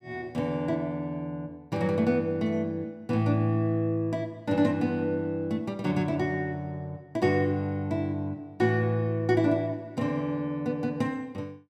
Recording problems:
none

